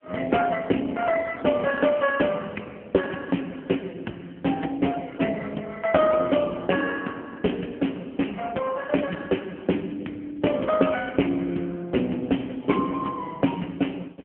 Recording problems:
phone line; 190 Hz to 3.2 kHz, AMR-NB

